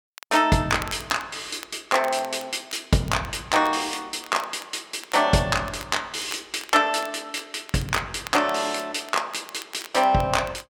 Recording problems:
crackle; vinyl, SNR 19 dB

